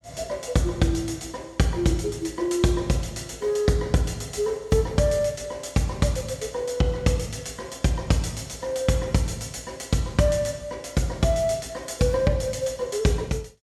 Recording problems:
none

